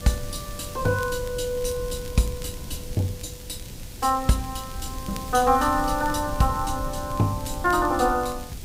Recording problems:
hiss; slope +2 dB per octave, SNR 16 dB
wind noise; below 120 Hz, SNR 12 dB
crackling; vinyl, SNR 23 dB

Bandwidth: 15.5 kHz